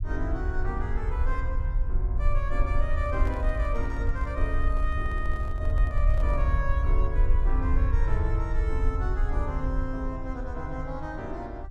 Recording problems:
rumble; below 62 Hz, SNR -6 dB
microphone handling noise; from 3 to 6.5 s; peak -4 dB vs average level

